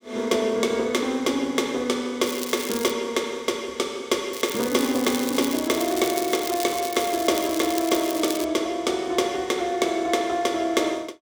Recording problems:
crackling; at 2 s and from 4.5 to 8.5 s; loose cable, SNR 8 dB

